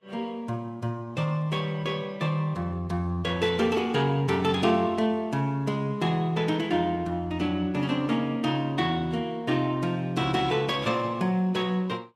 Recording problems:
lossy compression; Vorbis, log-spectral distance 2 dB, nothing above 12.3 kHz

